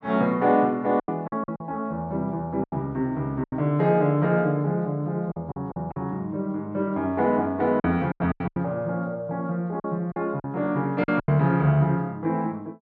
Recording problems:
packet loss; 8% of the sound replaced, filled with silence

